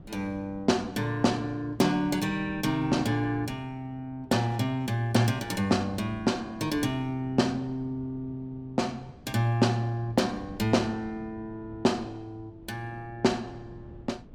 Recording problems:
wind on the microphone; below 270 Hz, SNR 20 dB

